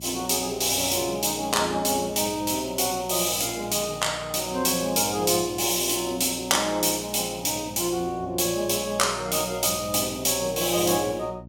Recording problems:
mains hum; 60 Hz, harmonics up to 600 Hz, SNR 20 dB

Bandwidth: 17 kHz